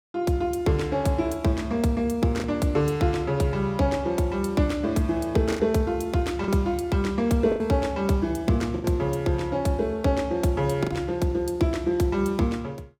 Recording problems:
packet loss; 3% of the sound replaced, filled with the last packet

